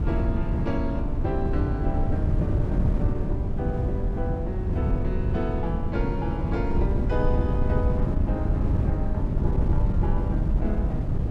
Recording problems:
hum; 50 Hz, harmonics up to 350 Hz, SNR 22 dB
wind on the microphone; below 140 Hz, SNR -6 dB

